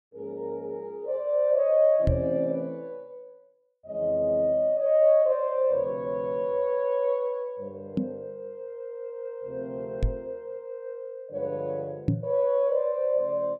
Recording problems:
microphone bump; 4 times, first at 2 s; peak +6 dB vs average level

